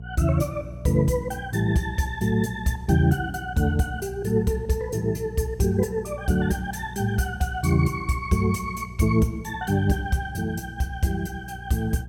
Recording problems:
electrical hum; 60 Hz, harmonics up to 480 Hz, SNR 15 dB

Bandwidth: 17 kHz